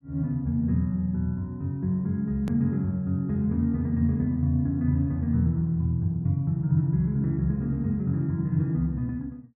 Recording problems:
edit click; at 2.5 s

